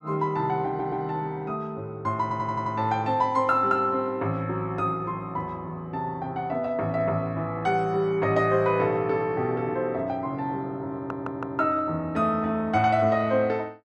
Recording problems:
stutter; at 0.5 s, at 2 s and at 11 s

